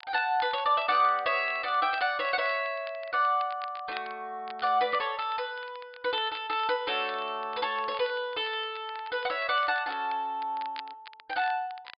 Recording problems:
treble cut off; nothing above 5 kHz
crackling; vinyl, SNR 20 dB

